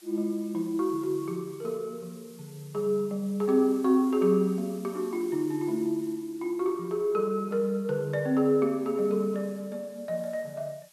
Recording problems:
background hiss; slope +2 dB per octave, SNR 25 dB

